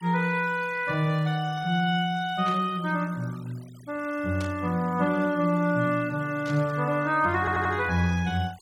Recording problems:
denoising artefacts; signal-to-artefact ratio 23 dB
burst of static; at 2.5 s, at 4.5 s and at 6.5 s; peak -11 dB vs average level
audio stuttering; at 7.5 s

